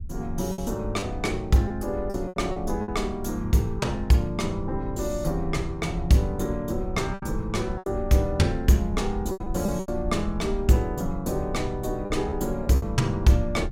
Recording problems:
rumble; below 76 Hz, SNR 10 dB
packet loss; 6% of the sound replaced, filled with repeated pitch periods

